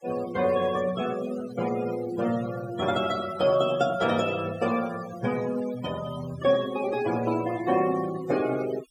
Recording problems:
denoising artefacts; signal-to-artefact ratio 14 dB

